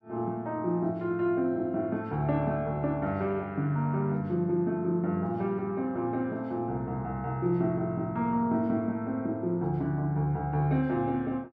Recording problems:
none

